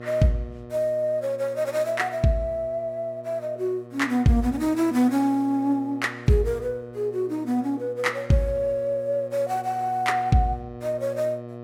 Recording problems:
electrical hum; 60 Hz, harmonics up to 1.8 kHz, SNR 16 dB

